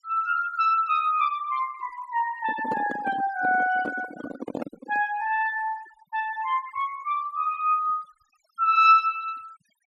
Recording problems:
noise reduction artefacts; signal-to-artefact ratio 19 dB
microphone handling noise; from 2.5 to 5 s; peak -4 dB vs average level

